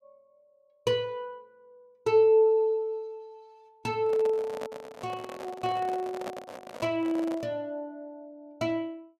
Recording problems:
handling noise; from 4 to 7.5 s; peak -5 dB vs average level

